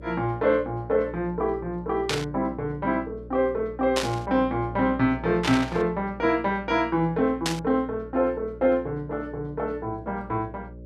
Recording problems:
electrical hum; 60 Hz, harmonics up to 600 Hz, SNR 16 dB
burst of static; 4 times, first at 2 s; peak +3 dB vs average level

